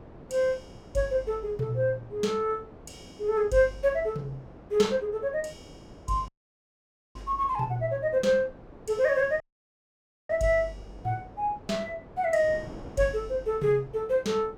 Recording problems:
wind on the microphone; below 570 Hz, SNR 20 dB
dropout; at 6.5 s for 1 s and at 9.5 s for 1 s

